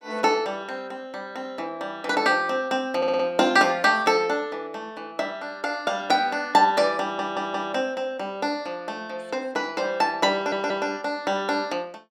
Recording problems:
audio stuttering; at 3 s, at 7 s and at 10 s

